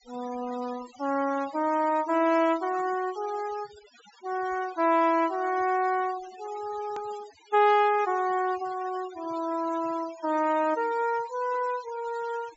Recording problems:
treble cut off; nothing above 8 kHz
denoising artefacts; signal-to-artefact ratio 19 dB
edit click; at 7 s

